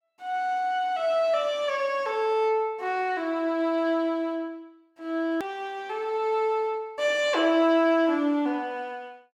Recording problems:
hard cut with a click; at 5.5 s

